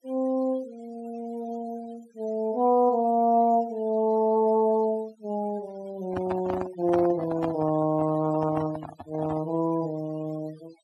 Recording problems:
denoising artefacts; signal-to-artefact ratio 21 dB
microphone handling noise; from 6 to 9.5 s; peak -2 dB vs average level

